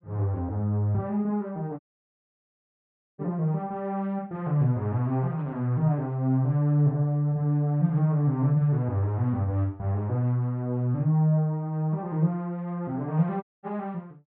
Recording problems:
audio cutting out; at 2 s for 1.5 s and at 13 s

